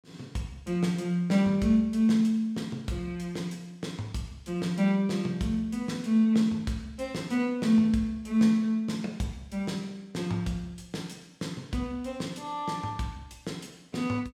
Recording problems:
none

